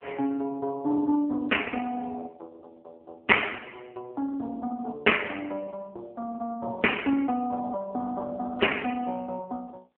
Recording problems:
telephone audio; 240 Hz to 3 kHz, AMR-NB

